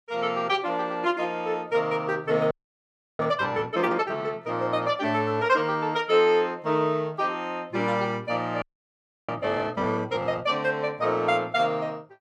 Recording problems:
audio freezing; at 2.5 s for 0.5 s and at 8.5 s for 0.5 s

